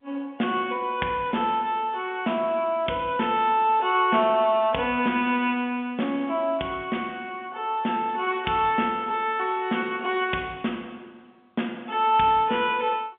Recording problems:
phone line; 150 Hz to 3.5 kHz, G.711

